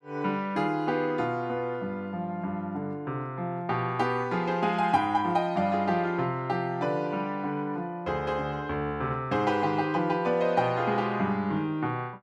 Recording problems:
none

